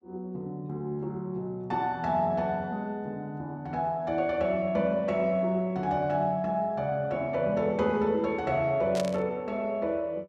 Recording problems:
burst of static; at 9 s; peak -4 dB vs average level

